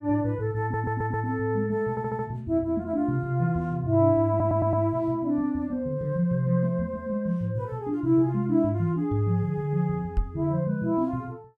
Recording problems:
audio stuttering; at 0.5 s, at 2 s and at 4.5 s
knock on the microphone; at 10 s; peak +2 dB vs average level

